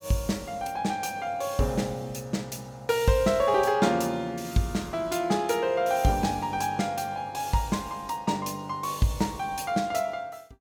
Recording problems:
none

